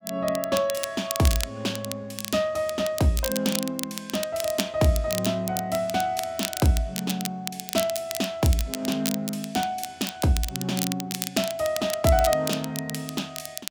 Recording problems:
crackling; vinyl, SNR 7 dB

